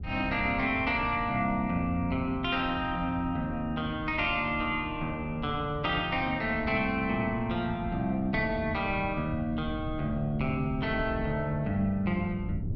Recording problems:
wind noise; below 150 Hz, SNR 11 dB

